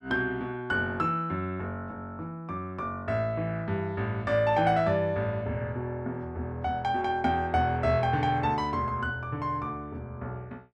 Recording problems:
none

